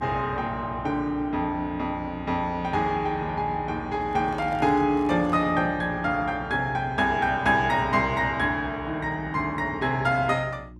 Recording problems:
hum; 60 Hz, harmonics up to 360 Hz, SNR 18 dB
handling noise; from 4 to 5.5 s; peak -13 dB vs average level

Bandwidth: 12.5 kHz